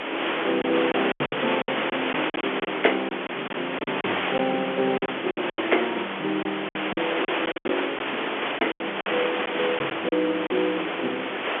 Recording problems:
phone line; 280 Hz to 3.4 kHz, G.711
hiss; SNR 0 dB
wind on the microphone; below 2 kHz, SNR 15 dB
lost packets; 11% of the sound replaced, filled with silence
crackle; from 3.5 to 6.5 s and from 7.5 to 10 s; loose cable, SNR 23 dB

